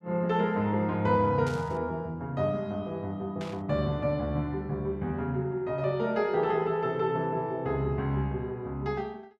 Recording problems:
static burst; at 1.5 s and at 3.5 s; peak -10 dB vs average level

